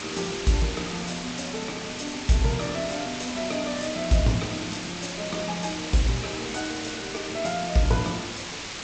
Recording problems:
codec artefacts; G.722, log-spectral distance 14 dB, nothing above 8 kHz
background hiss; slope -1 dB per octave, SNR 5 dB

